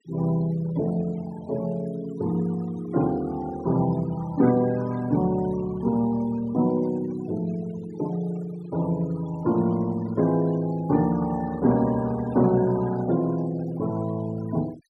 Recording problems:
denoising artefacts; signal-to-artefact ratio 19 dB

